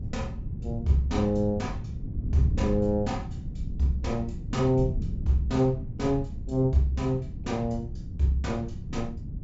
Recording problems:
treble missing; nothing above 8 kHz
wind noise; below 140 Hz, SNR 7 dB

